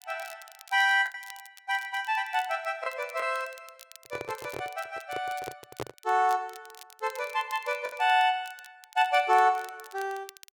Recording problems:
crackling; vinyl, SNR 22 dB
lost packets; 2% of the sound replaced, filled with the last packet
microphone handling noise; from 4 to 6 s; peak -3 dB vs average level

